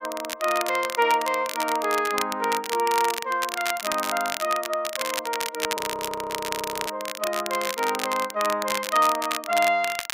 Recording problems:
crackle; vinyl, SNR 6 dB
frozen audio; at 6 s for 1 s

